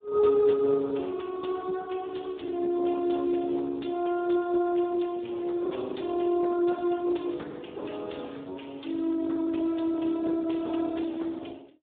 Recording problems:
telephone audio; 240 Hz to 3.5 kHz, Speex

